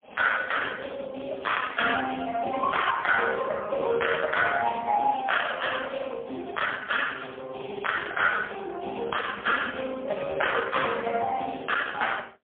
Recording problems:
phone line; 220 Hz to 3.3 kHz, AMR-NB, then MP3

